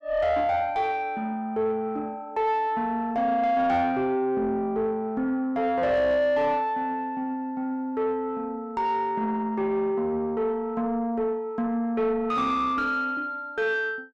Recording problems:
distortion; soft clipping, signal-to-distortion ratio 10 dB

